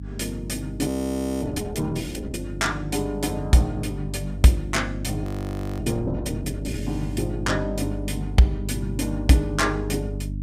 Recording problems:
mains hum; 50 Hz, harmonics up to 300 Hz, SNR 7 dB
frozen audio; at 1 s for 0.5 s and at 5 s for 0.5 s

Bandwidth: 15.5 kHz